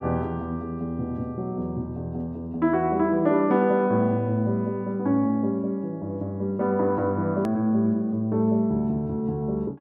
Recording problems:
hard cut with a click; at 7.5 s

